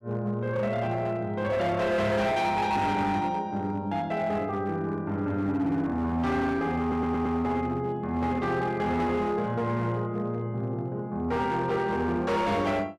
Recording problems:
distortion; hard clipping, signal-to-distortion ratio 11 dB
audio stuttering; at 7 s

